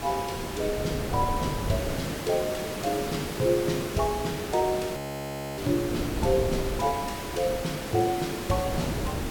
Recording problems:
background hiss; slope -5 dB per octave, SNR 5 dB
wind on the microphone; below 370 Hz, SNR 9 dB
audio freezing; at 5 s for 0.5 s

